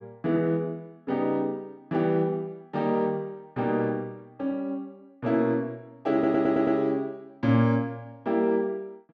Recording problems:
audio stuttering; at 6 s

